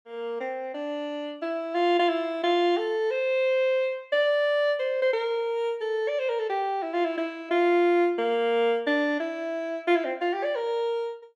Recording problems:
none

